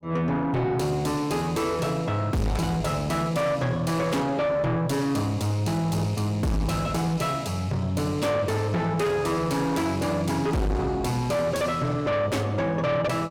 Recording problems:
distortion; soft clipping, signal-to-distortion ratio 7 dB

